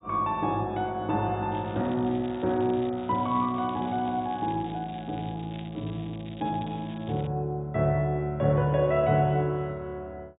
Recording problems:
treble missing; nothing above 4 kHz
crackling; from 1.5 to 7.5 s; loose cable, SNR 22 dB

